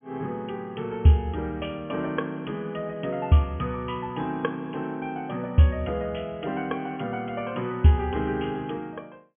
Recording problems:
treble cut off; nothing above 3.4 kHz

